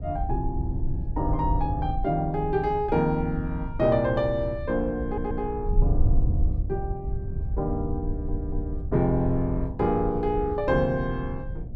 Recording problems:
hum; 60 Hz, harmonics up to 720 Hz, SNR 24 dB
wind noise; below 76 Hz, SNR 5 dB
stutter; at 5 s and at 8 s

